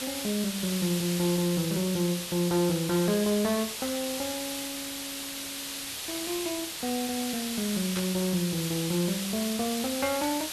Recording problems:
hiss; slope +2 dB per octave, SNR 4 dB
burst of static; at 8 s; peak -3 dB vs average level

